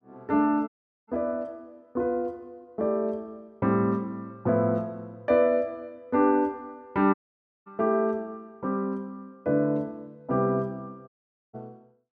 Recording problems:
dropout; at 0.5 s, at 7 s for 0.5 s and at 11 s

